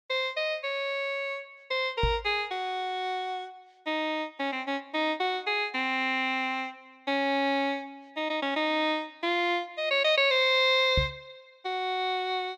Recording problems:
knock on the microphone; at 2 s and at 11 s; peak +3 dB vs average level

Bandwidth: 14.5 kHz